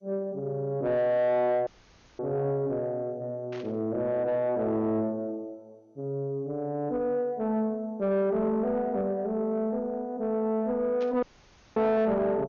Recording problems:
lossy codec; MP2, log-spectral distance 2 dB
distortion; soft clipping, signal-to-distortion ratio 10 dB
audio cutting out; at 1.5 s for 0.5 s and at 11 s for 0.5 s
static burst; at 3.5 s and at 11 s; peak -13 dB vs average level

